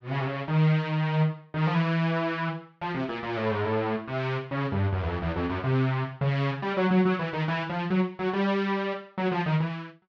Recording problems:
none

